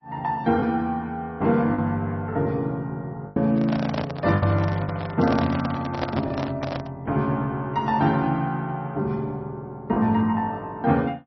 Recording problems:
codec artefacts; MP3, log-spectral distance 2 dB, nothing above 4.9 kHz
packet loss; 3% of the sound replaced, filled with the last packet
microphone handling noise; from 3.5 to 7 s; peak +2 dB vs average level

